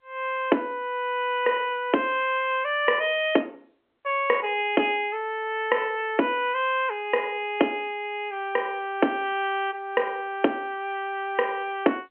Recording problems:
phone line; 240 Hz to 3.2 kHz, G.711

